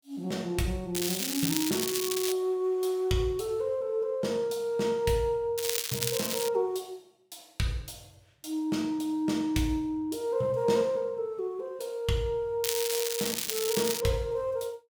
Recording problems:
crackle; from 1 to 2.5 s, at 5.5 s and from 13 to 14 s; loose cable, SNR 1 dB

